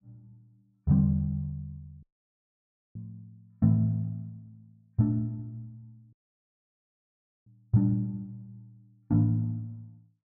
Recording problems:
audio cutting out; at 2 s for 1 s and at 6 s for 1.5 s

